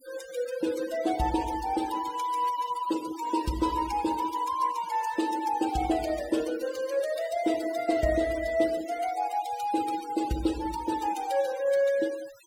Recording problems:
noise reduction artefacts; signal-to-artefact ratio 15 dB

